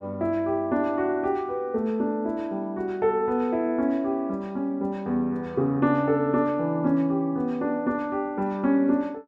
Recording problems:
none

